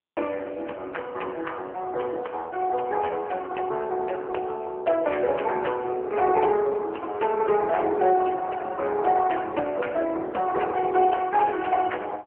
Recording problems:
telephone audio; 320 Hz to 3 kHz, AMR-NB

